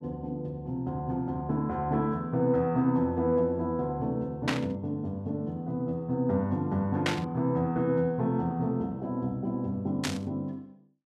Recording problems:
static burst; at 4.5 s, at 7 s and at 10 s; peak +4 dB vs average level

